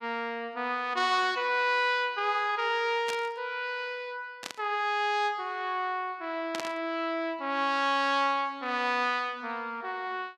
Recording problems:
burst of static; at 3 s, at 4.5 s and at 6.5 s; peak -3 dB vs average level

